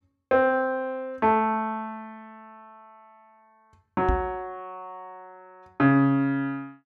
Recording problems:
microphone bump; at 4 s; peak +2 dB vs average level

